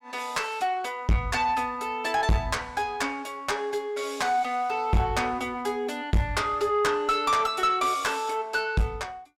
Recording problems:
distortion; soft clipping, signal-to-distortion ratio 6 dB

